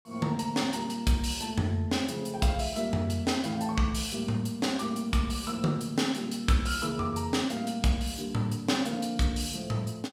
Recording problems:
none

